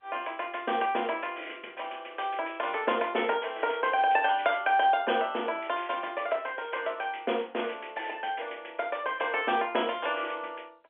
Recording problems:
phone line; 300 Hz to 3.4 kHz, G.711

